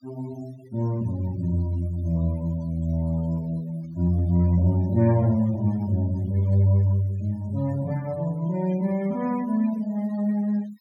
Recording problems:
noise reduction artefacts; signal-to-artefact ratio 22 dB

